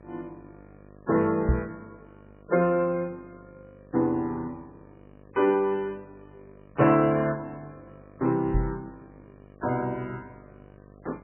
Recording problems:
lossy codec; MP3, log-spectral distance 3 dB, nothing above 2.7 kHz
electrical hum; 50 Hz, harmonics up to 1.3 kHz, SNR 25 dB
microphone bump; at 1.5 s and at 8.5 s; peak +6 dB vs average level

